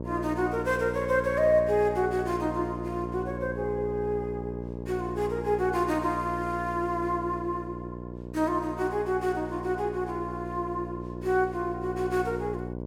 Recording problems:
electrical hum; 60 Hz, harmonics up to 1.1 kHz, SNR 8 dB

